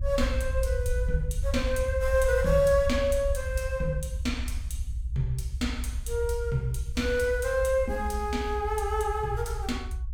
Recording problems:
low-frequency rumble; below 70 Hz, SNR 4 dB

